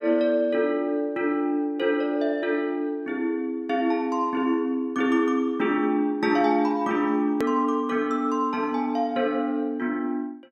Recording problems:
edit click; at 7.5 s

